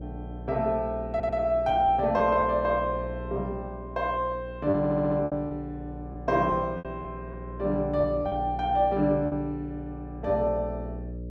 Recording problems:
hum; 60 Hz, harmonics up to 600 Hz, SNR 12 dB
lost packets; 4% of the sound replaced, filled with repeated pitch periods
audio stuttering; at 1 s and at 5 s

